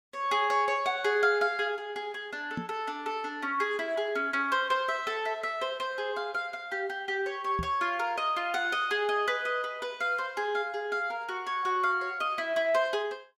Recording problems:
knock on the microphone; at 2.5 s and at 7.5 s; peak -1 dB vs average level

